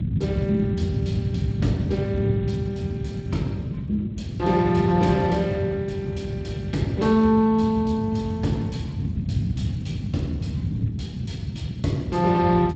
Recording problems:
codec artefacts; Speex, log-spectral distance 3 dB, nothing above 7.8 kHz
low-frequency rumble; below 190 Hz, SNR 4 dB

